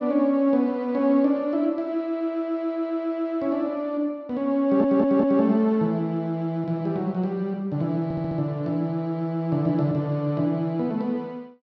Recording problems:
audio stuttering; at 4.5 s and at 8 s

